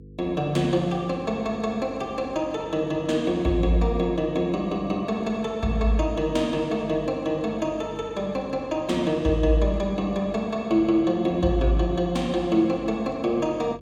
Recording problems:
electrical hum; 50 Hz, harmonics up to 500 Hz, SNR 22 dB

